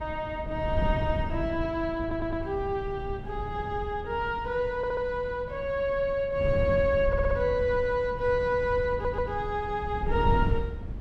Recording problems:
wind on the microphone; below 140 Hz, SNR 7 dB
audio stuttering; 4 times, first at 2 s

